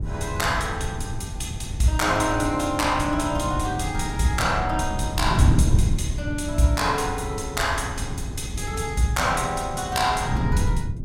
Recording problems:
wind noise; below 140 Hz, SNR 3 dB

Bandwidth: 16.5 kHz